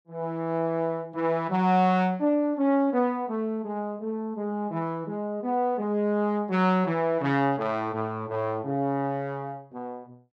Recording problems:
none

